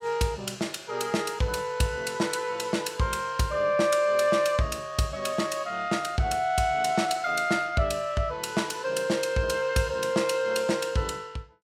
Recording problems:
none

